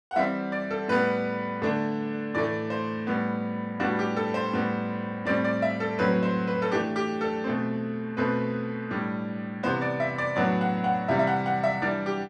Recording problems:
none

